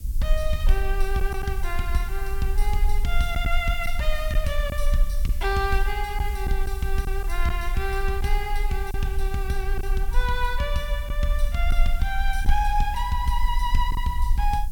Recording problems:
hiss; slope +6 dB per octave, SNR 18 dB
rumble; below 42 Hz, strongest tone 20 Hz, SNR 0 dB
lost packets; 2% of the sound replaced, filled with silence

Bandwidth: 17 kHz